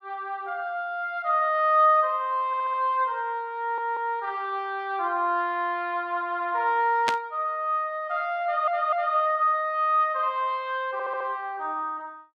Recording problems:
audio stuttering; 4 times, first at 2.5 s
static burst; at 7 s; peak +2 dB vs average level

